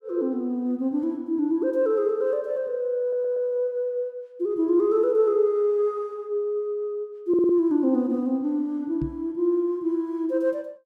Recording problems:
audio stuttering; at 3 s and at 7.5 s
microphone bump; at 9 s; peak -3 dB vs average level

